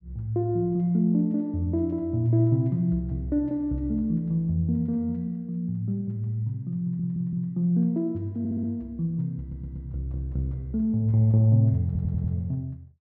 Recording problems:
stutter; 4 times, first at 7 s

